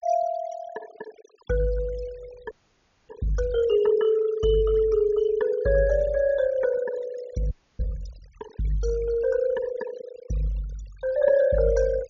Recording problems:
treble missing; nothing above 6.9 kHz
denoising artefacts; signal-to-artefact ratio 19 dB
audio freezing; at 2.5 s for 0.5 s and at 7.5 s

